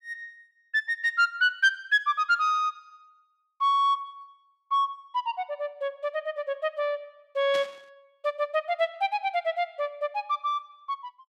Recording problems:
burst of static; at 7.5 s; peak -7 dB vs average level

